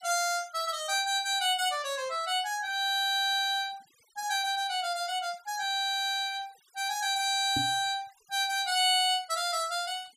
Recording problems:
denoising artefacts; signal-to-artefact ratio 27 dB
microphone bump; at 7.5 s; peak -3 dB vs average level

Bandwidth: 15 kHz